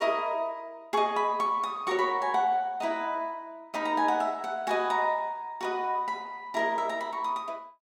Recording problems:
none

